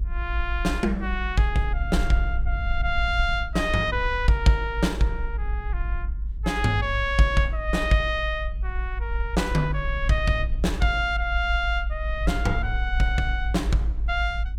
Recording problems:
low-frequency rumble; below 56 Hz, strongest tone 50 Hz, SNR 4 dB

